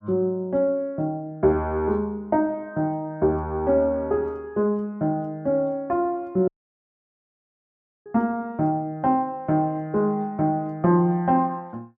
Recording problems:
audio cutting out; at 6.5 s for 1.5 s

